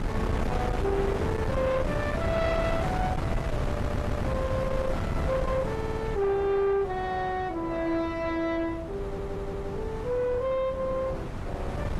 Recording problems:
lossy compression; AAC, log-spectral distance 2 dB, nothing above 13.1 kHz
distortion; soft clipping, signal-to-distortion ratio 11 dB
wind noise; below 520 Hz, SNR 3 dB
audio stuttering; at 3.5 s, at 5.5 s and at 9 s

